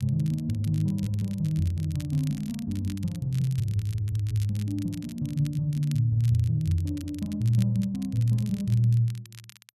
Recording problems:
crackle; vinyl, SNR 22 dB

